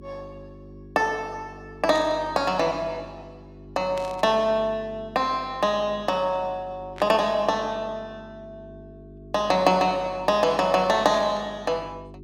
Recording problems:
electrical hum; 50 Hz, harmonics up to 400 Hz, SNR 21 dB
burst of static; 4 times, first at 2 s; peak -11 dB vs average level

